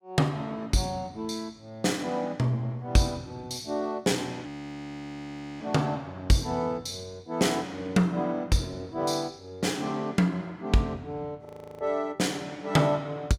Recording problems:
frozen audio; at 4.5 s for 1 s and at 11 s

